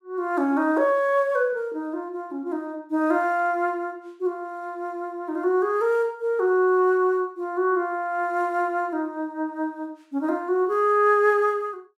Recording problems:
none

